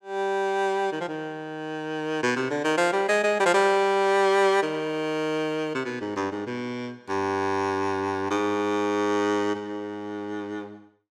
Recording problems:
none

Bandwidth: 16 kHz